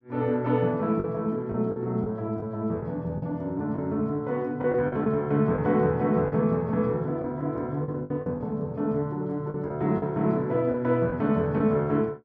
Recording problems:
lost packets; 6% of the sound replaced, filled with the last packet

